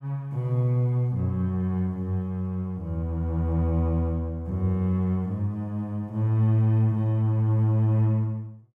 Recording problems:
none

